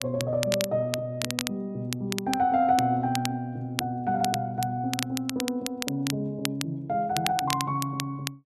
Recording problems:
crackle; vinyl, SNR 6 dB

